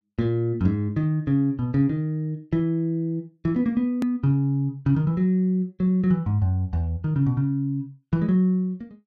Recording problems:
hard cut with a click; at 4 s

